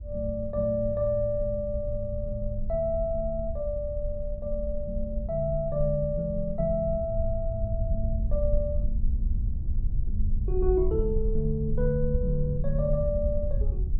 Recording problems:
rumble; below 64 Hz, SNR 3 dB

